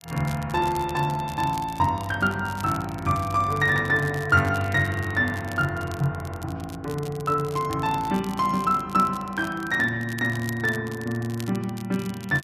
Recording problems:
crackle; vinyl, SNR 19 dB

